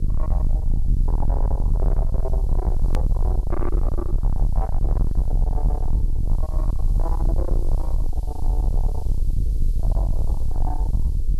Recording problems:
distorted audio; soft clipping, signal-to-distortion ratio 6 dB
mains hum; 50 Hz, harmonics up to 500 Hz, SNR 11 dB
hiss; SNR 20 dB
low-frequency rumble; below 58 Hz, SNR -10 dB
edit click; at 3 s

